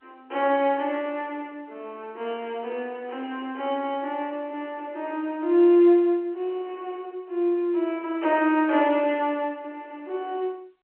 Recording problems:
telephone audio; 280 Hz to 3.2 kHz, G.711

